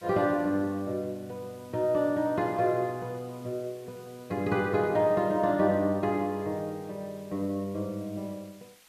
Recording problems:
hiss; slope +1 dB per octave, SNR 27 dB

